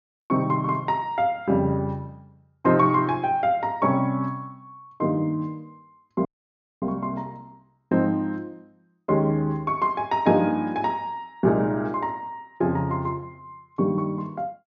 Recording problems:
treble cut off; nothing above 6.7 kHz
audio cutting out; at 6.5 s for 0.5 s

